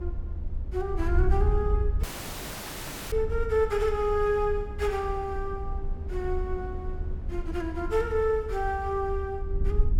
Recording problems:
low-frequency rumble; below 76 Hz, strongest tone 26 Hz, SNR 9 dB
wind on the microphone; below 68 Hz, SNR 5 dB
audio cutting out; at 2 s for 1 s

